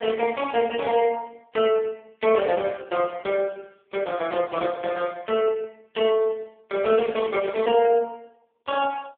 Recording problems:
telephone audio; 340 Hz to 3.3 kHz, AMR-NB

